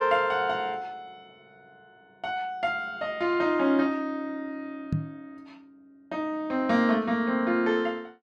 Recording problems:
microphone thump; at 5 s; peak +3 dB vs average level

